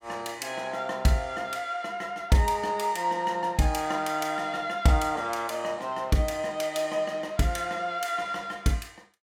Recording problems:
none

